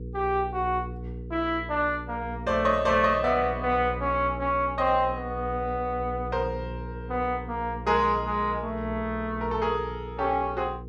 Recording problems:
electrical hum; 60 Hz, harmonics up to 480 Hz, SNR 11 dB

